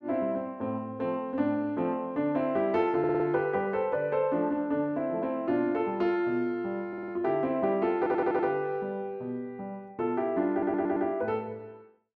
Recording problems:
audio stuttering; 4 times, first at 3 s

